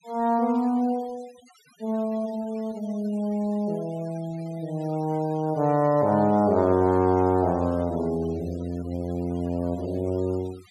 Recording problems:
denoising artefacts; signal-to-artefact ratio 24 dB

